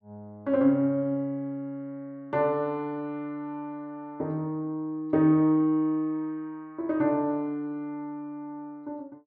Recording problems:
none

